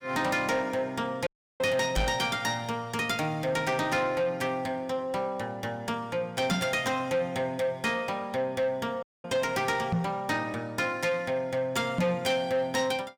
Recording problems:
distortion; soft clipping, signal-to-distortion ratio 12 dB
audio cutting out; at 1.5 s and at 9 s
microphone bump; 4 times, first at 2 s; peak +6 dB vs average level

